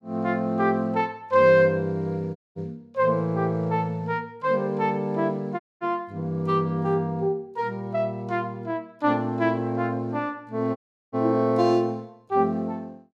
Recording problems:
audio cutting out; at 2.5 s, at 5.5 s and at 11 s

